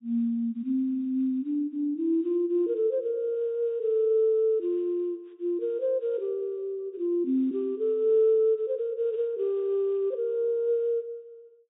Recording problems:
low-pass filter; nothing above 4 kHz

